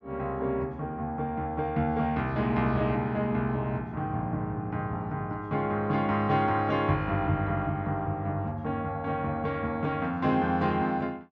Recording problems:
treble cut off; nothing above 8 kHz

